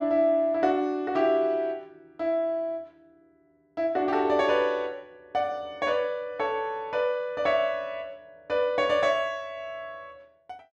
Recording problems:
none

